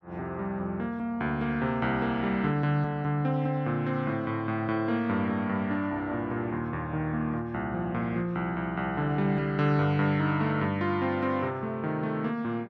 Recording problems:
none

